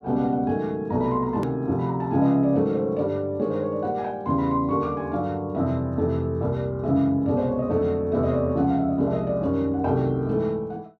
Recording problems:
hard cut with a click; at 1.5 s

